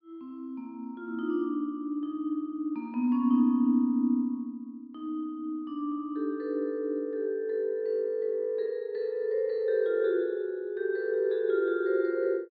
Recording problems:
treble missing; nothing above 5 kHz

